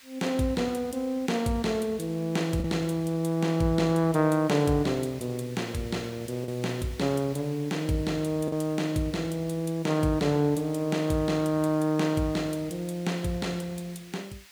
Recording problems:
hiss; SNR 22 dB
lost packets; 0.8% of the sound replaced, filled with the last packet

